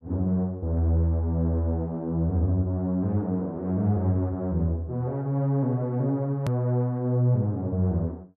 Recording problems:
edit click; at 6.5 s

